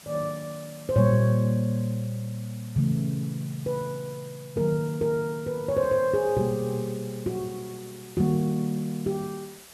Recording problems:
hiss; slope -1 dB per octave, SNR 20 dB

